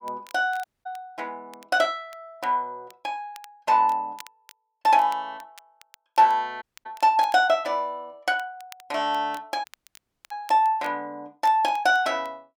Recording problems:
crackling; vinyl, SNR 27 dB
dropout; at 0.5 s, at 6.5 s and at 9.5 s for 0.5 s

